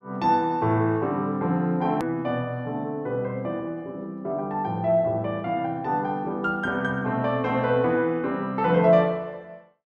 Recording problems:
hard cut with a click; at 2 s

